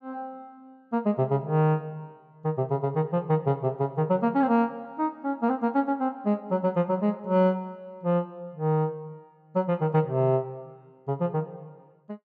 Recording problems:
none

